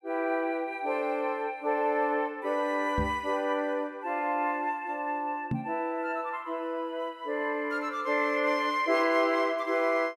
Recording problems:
knock on the microphone; at 3 s and at 5.5 s; peak +2 dB vs average level

